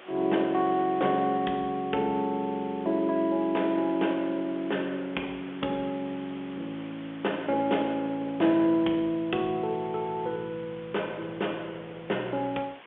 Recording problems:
phone line; 240 Hz to 3.5 kHz, G.711
background hiss; SNR 19 dB

